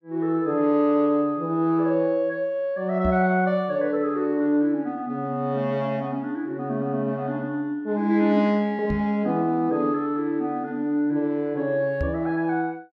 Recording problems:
microphone bump; at 3 s, at 9 s and at 12 s; peak -1 dB vs average level

